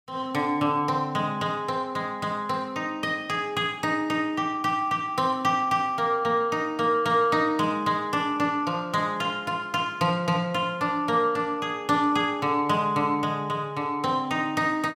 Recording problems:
none

